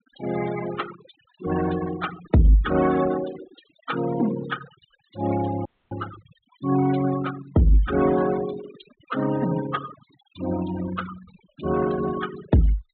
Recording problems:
treble missing; nothing above 4 kHz
denoising artefacts; signal-to-artefact ratio 12 dB
dropout; at 5.5 s

